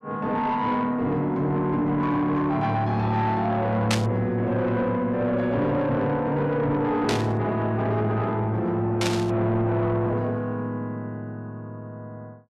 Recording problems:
distortion; soft clipping, signal-to-distortion ratio 11 dB
burst of static; at 4 s, at 7 s and at 9 s; peak +3 dB vs average level

